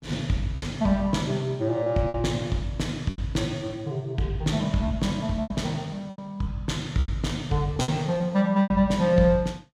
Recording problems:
packet loss; 7% of the sound replaced, filled with repeated pitch periods

